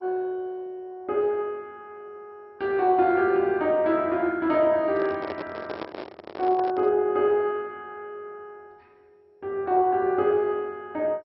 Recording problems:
lossy codec; MP2, log-spectral distance 3 dB, nothing above 4.5 kHz
handling noise; from 5 to 7 s; peak -5 dB vs average level

